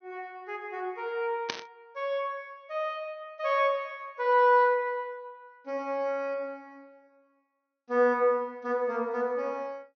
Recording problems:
low-pass filter; nothing above 6.2 kHz
burst of static; at 1.5 s; peak +2 dB vs average level

